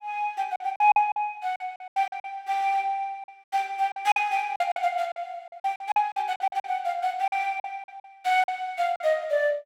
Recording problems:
packet loss; 13% of the sound replaced, filled with silence

